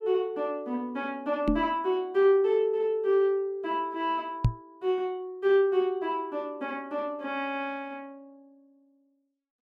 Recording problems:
knock on the microphone; at 1.5 s and at 4.5 s; peak +8 dB vs average level

